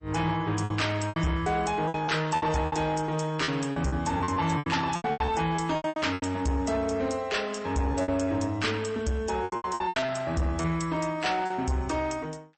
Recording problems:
lossy compression; MP3, log-spectral distance 3 dB, nothing above 8.2 kHz
distortion; soft clipping, signal-to-distortion ratio 11 dB
packet loss; 13% of the sound replaced, filled with repeated pitch periods

